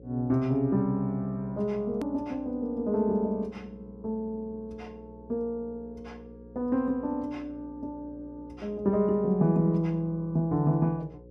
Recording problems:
hum; 60 Hz, harmonics up to 540 Hz, SNR 20 dB
click at an edit; at 2 s

